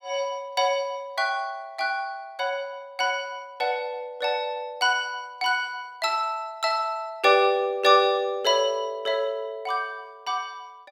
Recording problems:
none

